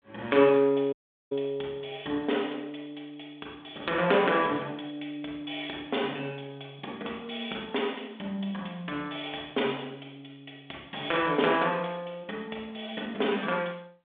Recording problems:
phone line; 280 Hz to 3.6 kHz, G.726
audio cutting out; at 1 s

